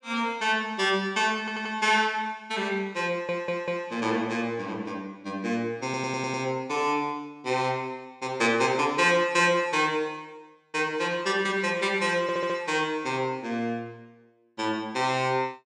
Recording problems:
stutter; 4 times, first at 1.5 s

